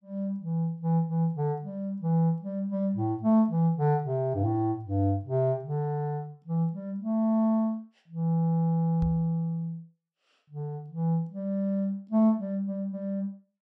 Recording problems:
knock on the microphone; at 9 s; peak -2 dB vs average level

